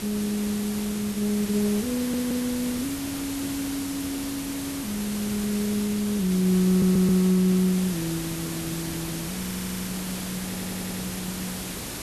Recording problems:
hum; 60 Hz, harmonics up to 840 Hz, SNR 25 dB
hiss; SNR 6 dB
stutter; 4 times, first at 2 s

